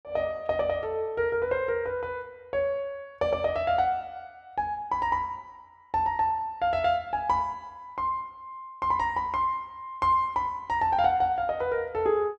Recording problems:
none

